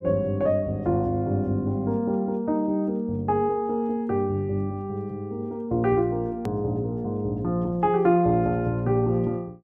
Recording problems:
hard cut with a click; at 6.5 s

